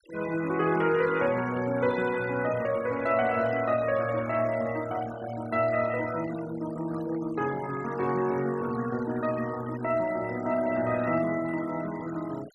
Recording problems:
noise reduction artefacts; signal-to-artefact ratio 16 dB

